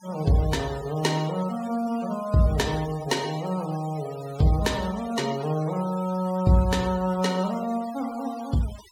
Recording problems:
noise reduction artefacts; signal-to-artefact ratio 17 dB

